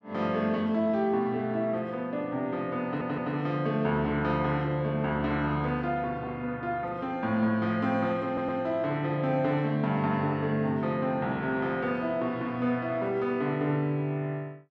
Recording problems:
audio stuttering; at 3 s and at 8.5 s

